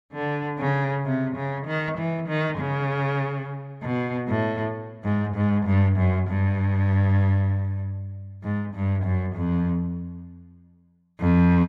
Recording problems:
none

